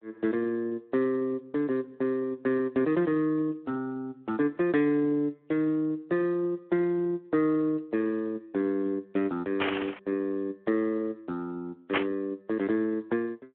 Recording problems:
telephone audio; 260 Hz to 3.6 kHz, Speex
static burst; at 9.5 s and at 12 s; peak +7 dB vs average level

